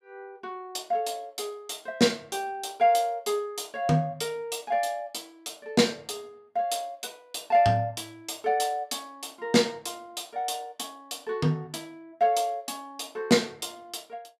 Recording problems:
none

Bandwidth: 15.5 kHz